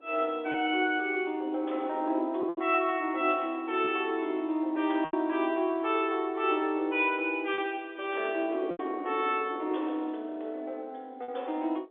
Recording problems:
telephone audio; 260 Hz to 3.6 kHz, G.711
wind on the microphone; below 510 Hz, SNR 13 dB
packet loss; 3% of the sound replaced, filled with repeated pitch periods

